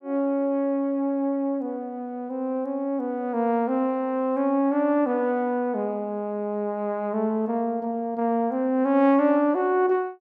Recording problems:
none

